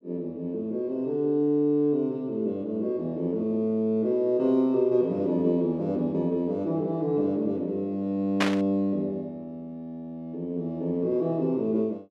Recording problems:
burst of static; at 8.5 s; peak +5 dB vs average level

